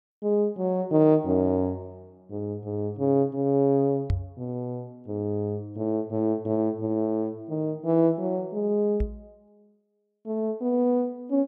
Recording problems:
knock on the microphone; at 4 s and at 9 s; peak +3 dB vs average level

